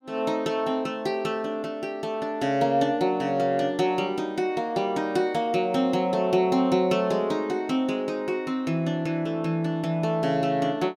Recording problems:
none

